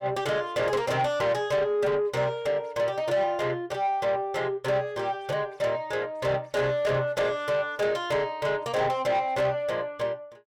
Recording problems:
distorted audio; soft clipping, signal-to-distortion ratio 11 dB

